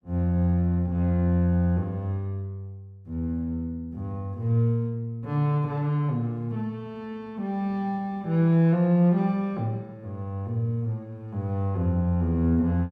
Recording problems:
none

